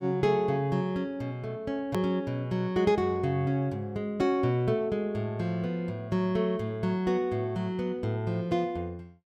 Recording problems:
click at an edit; at 2 s

